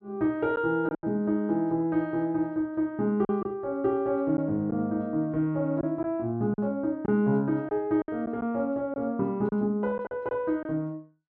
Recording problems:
packet loss; 5% of the sound replaced, filled with silence

